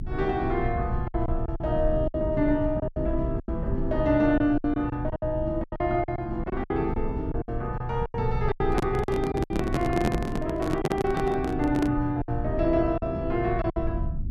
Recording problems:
rumble; below 110 Hz, SNR 7 dB
packet loss; 11% of the sound replaced, filled with silence
microphone handling noise; from 8.5 to 12 s; peak +4 dB vs average level

